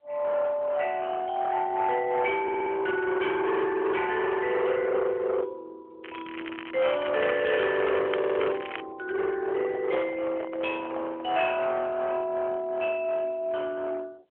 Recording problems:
phone line; 410 Hz to 3.3 kHz, AMR-NB
distorted audio; hard clipping, uneven, signal-to-distortion ratio 8 dB
audio stuttering; at 2.5 s and at 8 s
crackle; from 6 to 9 s; loose cable, SNR 12 dB
microphone handling noise; from 9.5 to 11 s; peak -5 dB vs average level

